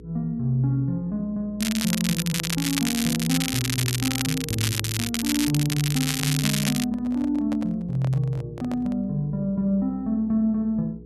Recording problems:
hum; 60 Hz, harmonics up to 480 Hz, SNR 19 dB
crackle; from 1.5 to 7 s; loose cable, SNR 2 dB
handling noise; from 6.5 to 9 s; peak -6 dB vs average level

